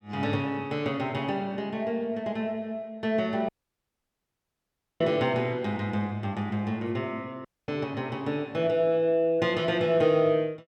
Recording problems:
audio cutting out; at 3.5 s for 1.5 s and at 7.5 s

